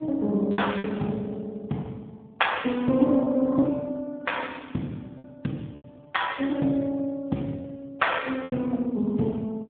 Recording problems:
phone line; 110 Hz to 3.5 kHz, AMR-NB
lost packets; 5% of the sound replaced, filled with repeated pitch periods

